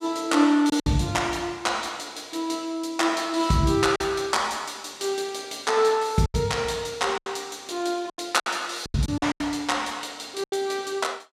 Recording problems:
packet loss; 6% of the sound replaced, filled with silence

